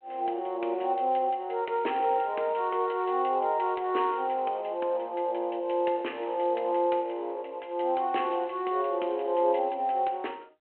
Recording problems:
telephone audio; 280 Hz to 3.2 kHz, G.726

